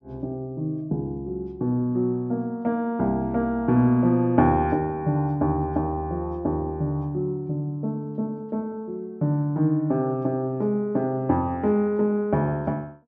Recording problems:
none

